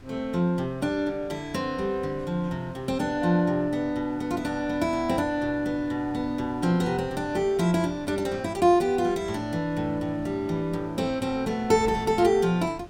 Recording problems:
wind on the microphone; below 340 Hz, SNR 20 dB

